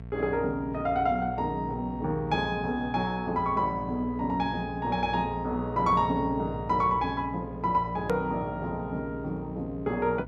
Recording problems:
electrical hum; 60 Hz, harmonics up to 900 Hz, SNR 12 dB
click at an edit; at 8 s

